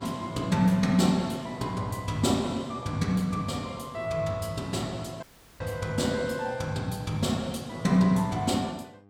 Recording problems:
electrical hum; 50 Hz, harmonics up to 1.2 kHz, SNR 26 dB
audio cutting out; at 5 s

